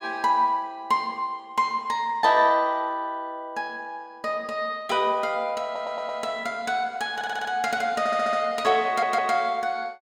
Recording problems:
audio stuttering; 4 times, first at 5.5 s

